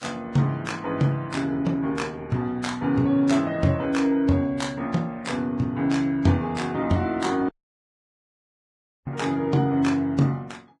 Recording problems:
lossy codec; Vorbis, log-spectral distance 2 dB, nothing above 10.4 kHz
audio cutting out; at 7.5 s for 1.5 s

